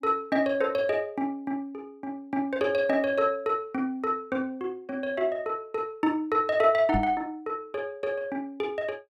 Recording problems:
knock on the microphone; at 7 s; peak +1 dB vs average level

